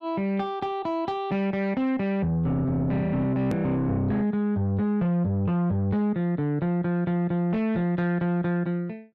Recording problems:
distortion; soft clipping, signal-to-distortion ratio 11 dB
edit click; at 3.5 s

